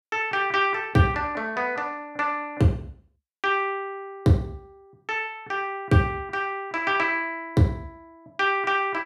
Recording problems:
none

